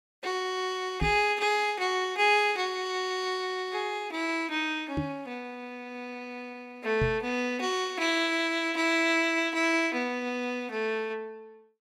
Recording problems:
microphone thump; at 1 s, at 5 s and at 7 s; peak +1 dB vs average level

